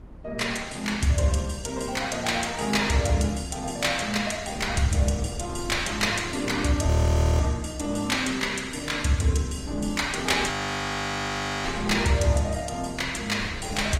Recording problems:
lossy codec; Opus, log-spectral distance 4 dB, nothing above 16 kHz
wind on the microphone; below 220 Hz, SNR 16 dB
audio freezing; at 7 s for 0.5 s and at 11 s for 1 s

